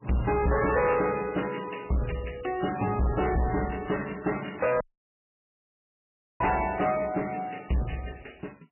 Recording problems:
lossy codec; MP3, log-spectral distance 11 dB, nothing above 2.9 kHz
distorted audio; hard clipping, signal-to-distortion ratio 6 dB
audio cutting out; at 5 s for 1.5 s

